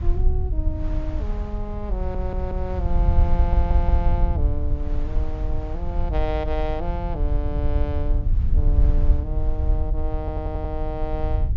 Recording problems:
low-pass filter; nothing above 7.3 kHz
low-frequency rumble; below 66 Hz, SNR -7 dB
wind noise; below 1.6 kHz, SNR 17 dB
audio stuttering; at 2 s, at 3.5 s and at 10 s

